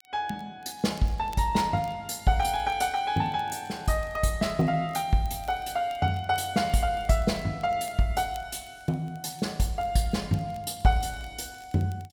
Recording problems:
crackling; vinyl, SNR 28 dB

